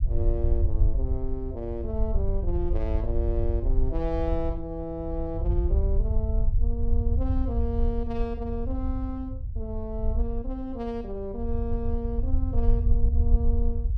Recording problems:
low-frequency rumble; below 68 Hz, SNR -5 dB

